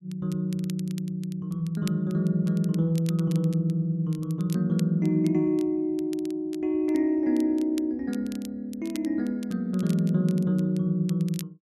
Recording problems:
crackle; vinyl, SNR 22 dB

